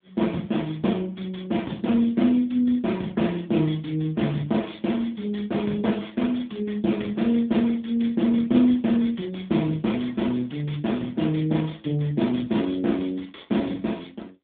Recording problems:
phone line; 86 Hz to 3.6 kHz, AMR-NB

